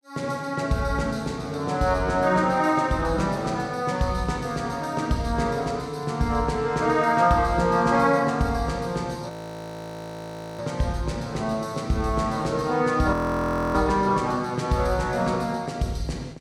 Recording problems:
audio freezing; at 9.5 s for 1.5 s and at 13 s for 0.5 s

